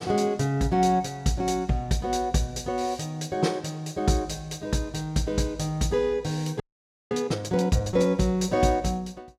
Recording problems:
frozen audio; at 6.5 s for 0.5 s

